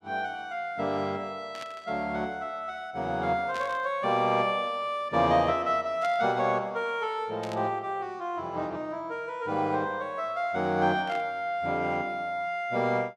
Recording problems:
burst of static; 5 times, first at 1.5 s; peak -8 dB vs average level

